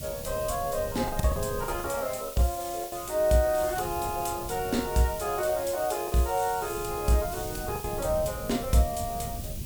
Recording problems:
background hiss; SNR 11 dB
wind noise; below 160 Hz, SNR 12 dB
lost packets; 5% of the sound replaced, filled with the last packet

